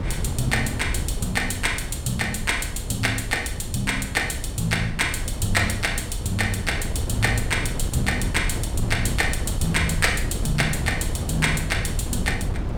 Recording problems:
wind on the microphone; below 150 Hz, SNR 5 dB

